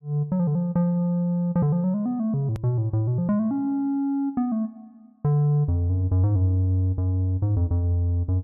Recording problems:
hard cut with a click; at 2.5 s

